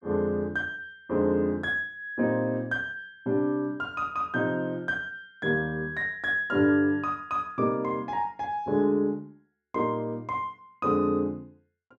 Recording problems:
none

